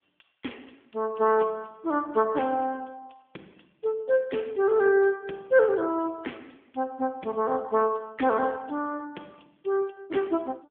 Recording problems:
telephone audio; 240 Hz to 3.4 kHz, AMR-NB

